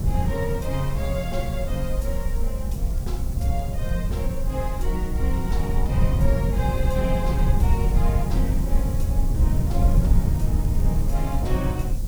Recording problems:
background hiss; SNR 14 dB
rumble; below 48 Hz, SNR 3 dB
wind noise; below 110 Hz, SNR -3 dB
crackling; from 2.5 to 4 s and from 9.5 to 12 s; loose cable, SNR 27 dB

